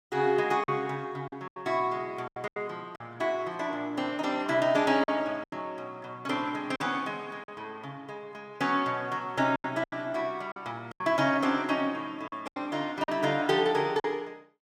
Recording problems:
packet loss; 7% of the sound replaced, filled with silence

